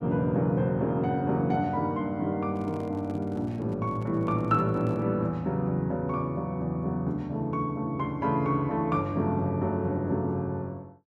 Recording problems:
handling noise; from 2.5 to 5 s; peak -10 dB vs average level

